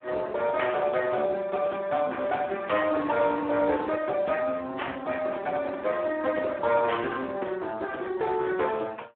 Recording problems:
phone line; 220 Hz to 3.6 kHz, Speex

